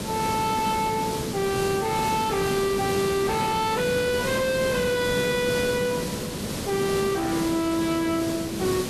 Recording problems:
codec artefacts; MP3, log-spectral distance 2 dB
distortion; hard clipping, signal-to-distortion ratio 7 dB
hiss; SNR 5 dB

